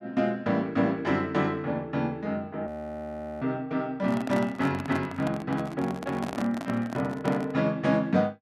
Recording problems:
audio freezing; at 2.5 s for 1 s
microphone handling noise; from 4 to 7.5 s; peak -2 dB vs average level

